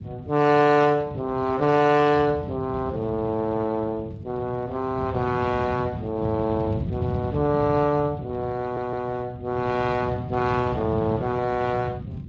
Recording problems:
lossy compression; AAC, then Speex, log-spectral distance 3 dB, nothing above 7.3 kHz
rumble; below 190 Hz, SNR 9 dB
audio stuttering; at 8.5 s

